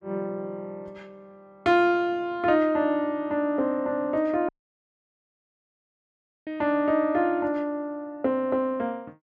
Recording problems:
dropout; at 4.5 s for 2 s

